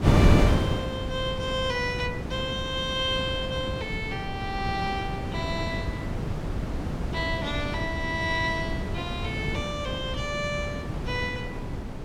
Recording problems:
wind on the microphone; below 310 Hz, SNR 0 dB

